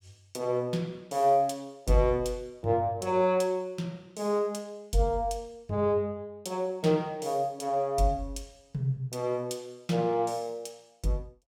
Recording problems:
none

